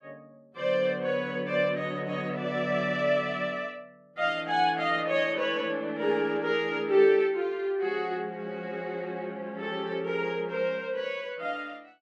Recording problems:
none

